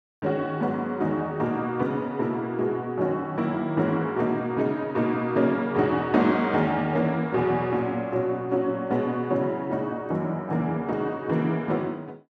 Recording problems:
none

